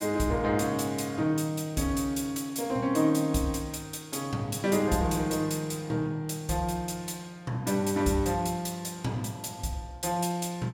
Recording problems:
none

